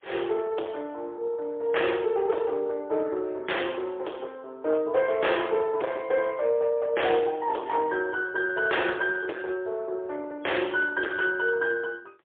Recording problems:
telephone audio; 300 Hz to 3.5 kHz, AMR-NB, then MP3
distortion; hard clipping, signal-to-distortion ratio 10 dB

